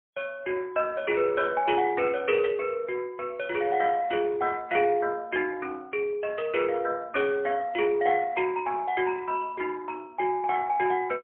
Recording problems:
phone line; 280 Hz to 3.1 kHz, AMR-NB, then MP3

